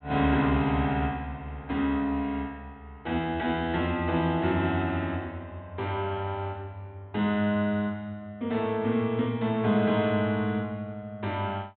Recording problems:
low-pass filter; nothing above 4 kHz

